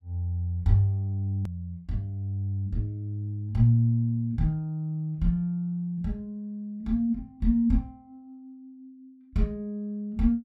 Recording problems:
click at an edit; at 1.5 s

